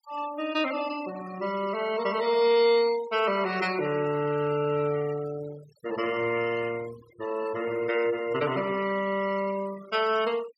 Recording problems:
denoising artefacts; signal-to-artefact ratio 15 dB

